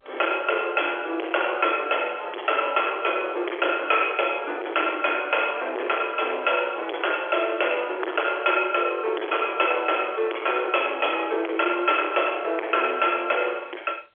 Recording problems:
telephone audio; 300 Hz to 3.4 kHz, G.711
distortion; hard clipping, signal-to-distortion ratio 7 dB

